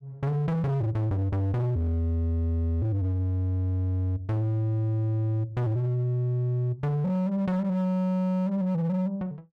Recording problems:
distorted audio; hard clipping, signal-to-distortion ratio 11 dB

